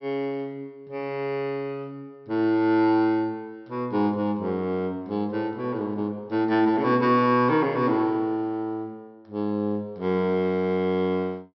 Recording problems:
low-pass filter; nothing above 5.6 kHz

